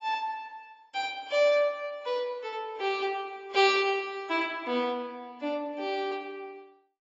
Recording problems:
lossy codec; AAC, log-spectral distance 2 dB, nothing above 7.1 kHz

